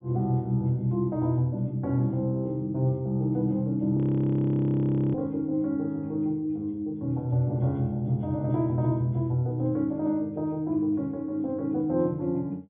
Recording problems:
treble cut off; nothing above 3.5 kHz
audio freezing; at 4 s for 1 s

